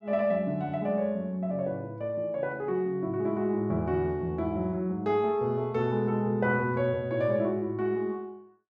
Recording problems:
none

